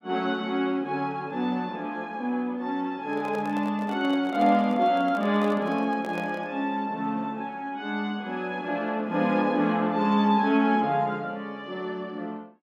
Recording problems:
microphone handling noise; from 3 to 6.5 s; peak -7 dB vs average level

